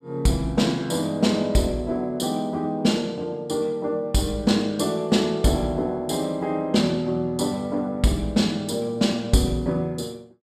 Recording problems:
none

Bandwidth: 14.5 kHz